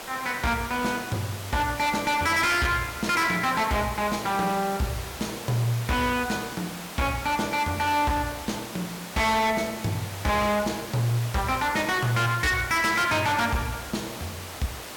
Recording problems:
distorted audio; hard clipping, signal-to-distortion ratio 6 dB
hiss; slope -3 dB per octave, SNR 11 dB

